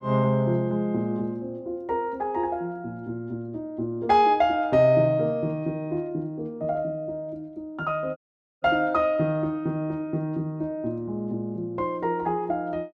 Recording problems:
audio cutting out; at 8 s

